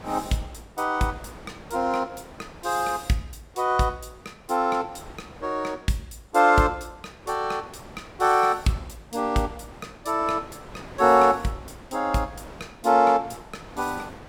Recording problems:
wind on the microphone; below 1.1 kHz, SNR 21 dB

